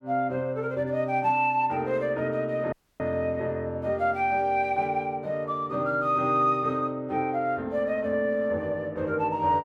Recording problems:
dropout; at 2.5 s

